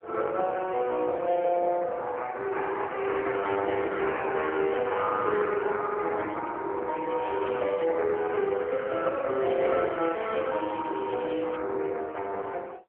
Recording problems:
telephone audio; 340 Hz to 3.3 kHz, AMR-NB
crackling; at 7 s and from 9.5 to 12 s; loose cable, SNR 20 dB

